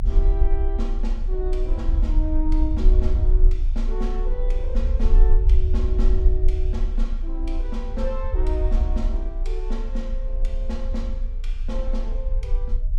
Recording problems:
low-frequency rumble; below 50 Hz, strongest tone 28 Hz, SNR -9 dB

